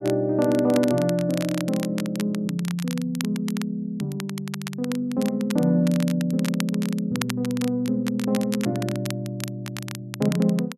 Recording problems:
crackling; vinyl, SNR 13 dB

